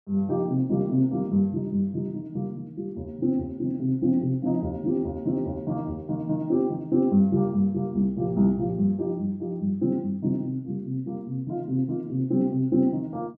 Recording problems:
none

